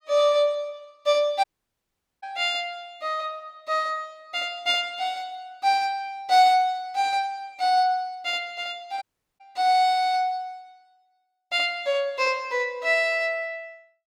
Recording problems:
audio cutting out; at 1.5 s for 1 s and at 9 s

